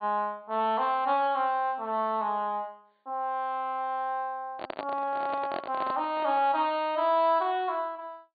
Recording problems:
treble missing; nothing above 4.6 kHz
handling noise; from 4.5 to 6.5 s; peak -2 dB vs average level

